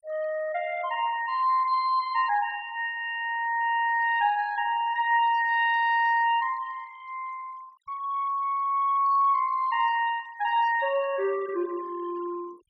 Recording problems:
denoising artefacts; signal-to-artefact ratio 24 dB

